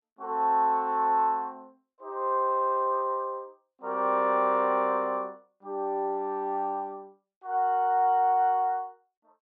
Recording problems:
none

